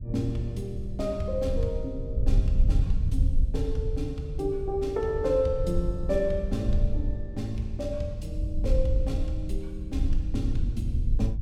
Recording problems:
rumble; below 72 Hz, SNR 0 dB

